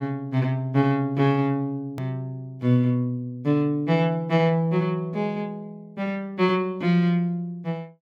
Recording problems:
click at an edit; at 2 s

